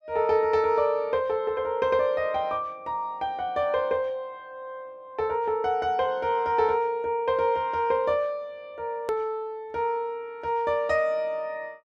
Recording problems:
edit click; at 9 s

